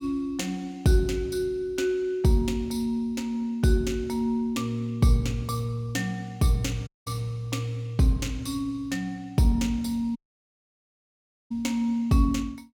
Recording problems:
dropout; at 7 s and at 10 s for 1.5 s

